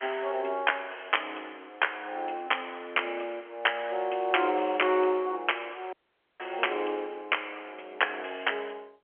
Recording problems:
phone line; 280 Hz to 3.3 kHz, G.711
dropout; at 6 s

